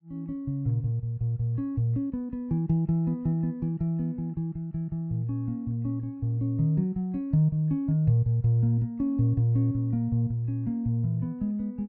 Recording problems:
none

